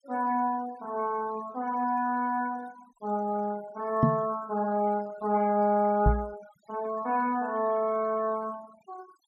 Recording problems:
denoising artefacts; signal-to-artefact ratio 22 dB
microphone bump; at 4 s and at 6 s; peak +9 dB vs average level

